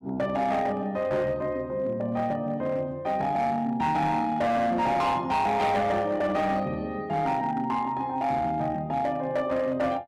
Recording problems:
distorted audio; hard clipping, signal-to-distortion ratio 11 dB

